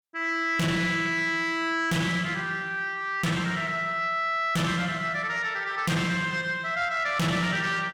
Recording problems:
distortion; soft clipping, signal-to-distortion ratio 6 dB

